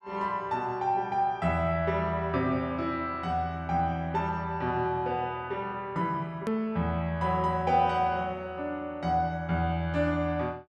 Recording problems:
click at an edit; at 6.5 s

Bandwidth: 12 kHz